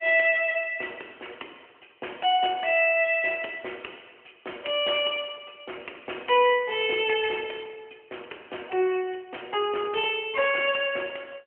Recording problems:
phone line; 300 Hz to 3.2 kHz, AMR-NB

